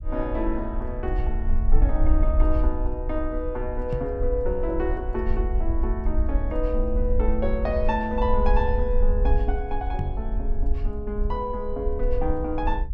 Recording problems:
low-frequency rumble; below 52 Hz, strongest tone 20 Hz, SNR -1 dB
microphone thump; at 4 s and at 10 s; peak +4 dB vs average level

